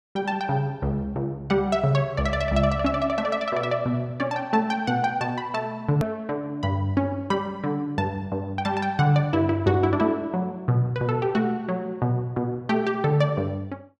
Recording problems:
edit click; at 6 s

